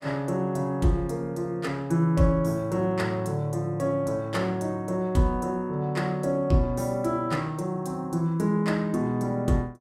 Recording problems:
none

